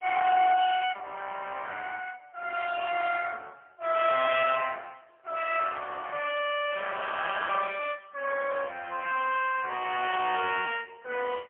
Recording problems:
telephone audio; 430 Hz to 3.3 kHz, AMR-NB, then MP3

